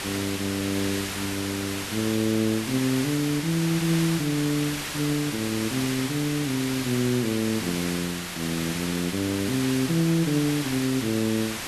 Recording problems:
hiss; slope -1 dB per octave, SNR 5 dB

